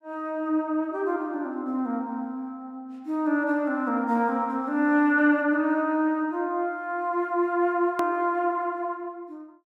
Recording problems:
hard cut with a click; at 8 s

